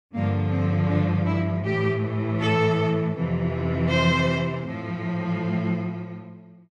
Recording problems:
none

